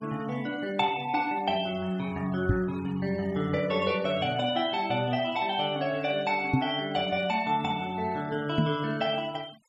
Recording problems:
noise reduction artefacts; signal-to-artefact ratio 22 dB
knock on the microphone; at 2.5 s, at 6.5 s and at 8.5 s; peak +7 dB vs average level

